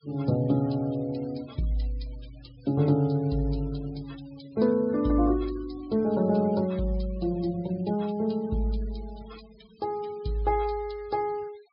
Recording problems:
treble cut off; nothing above 5.5 kHz
noise reduction artefacts; signal-to-artefact ratio 24 dB

